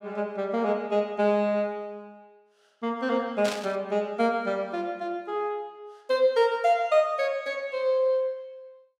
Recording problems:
burst of static; at 3.5 s; peak -3 dB vs average level

